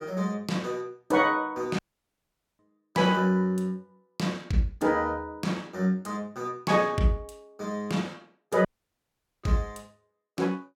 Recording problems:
dropout; at 2 s for 1 s and at 8.5 s for 1 s

